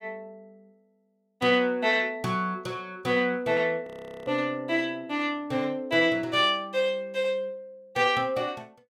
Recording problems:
frozen audio; at 4 s

